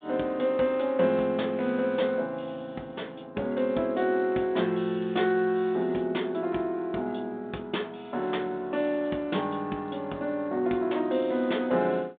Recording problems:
telephone audio; 190 Hz to 3.7 kHz, G.726

